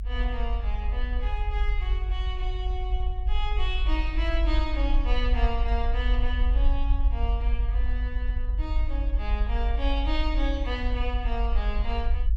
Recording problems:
rumble; below 50 Hz, SNR -6 dB

